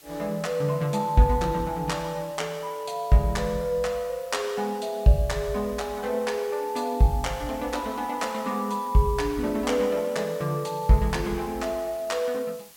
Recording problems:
background hiss; slope 0 dB per octave, SNR 22 dB

